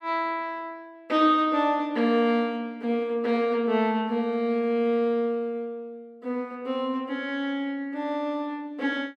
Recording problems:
none

